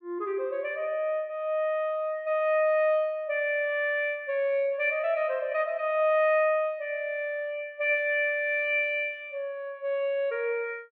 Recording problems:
none

